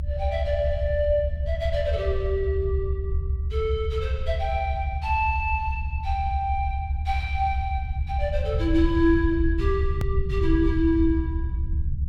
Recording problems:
low-frequency rumble; below 76 Hz, SNR 1 dB
click at an edit; at 10 s

